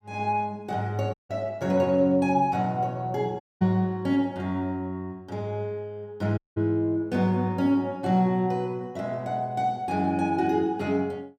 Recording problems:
dropout; at 1 s, at 3.5 s and at 6.5 s

